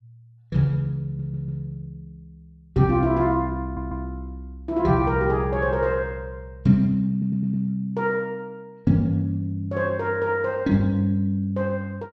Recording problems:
stutter; at 1 s, at 3.5 s and at 7 s

